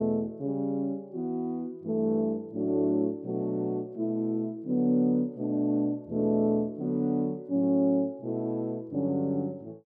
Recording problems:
none

